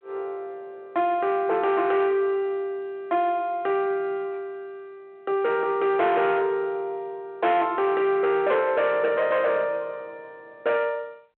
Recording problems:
telephone audio; 190 Hz to 3.2 kHz, G.726
distorted audio; soft clipping, signal-to-distortion ratio 11 dB

